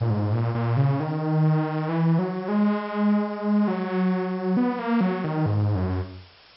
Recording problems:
low-pass filter; nothing above 5.4 kHz
background hiss; slope 0 dB per octave, SNR 27 dB

